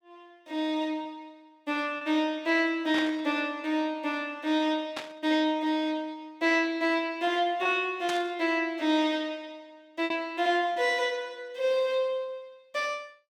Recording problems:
lost packets; 1.7% of the sound replaced, filled with repeated pitch periods
burst of static; at 3 s, at 5 s and at 8 s; peak -3 dB vs average level

